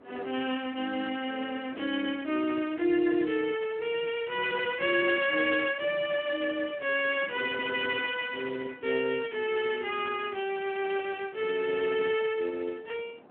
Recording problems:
phone line; 240 Hz to 3.2 kHz, Speex
wind on the microphone; below 720 Hz, SNR 22 dB

